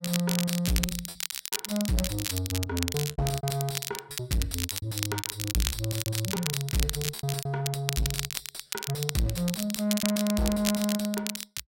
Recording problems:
distorted audio; soft clipping, signal-to-distortion ratio 7 dB
crackle; vinyl, SNR 3 dB
lost packets; 15% of the sound replaced, filled with repeated pitch periods

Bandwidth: 16 kHz